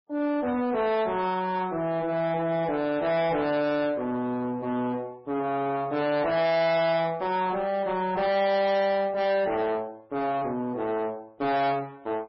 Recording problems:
codec artefacts; Vorbis, then MP3, log-spectral distance 2 dB, nothing above 4.9 kHz
distorted audio; soft clipping, signal-to-distortion ratio 7 dB

